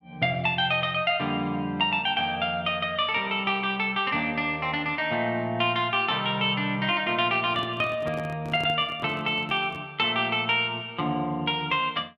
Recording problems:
microphone handling noise; from 7.5 to 10 s; peak -8 dB vs average level

